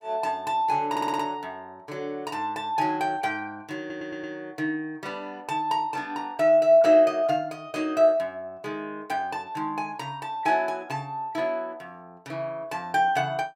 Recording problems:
audio stuttering; at 1 s and at 4 s

